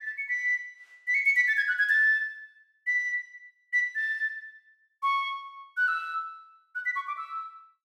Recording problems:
none

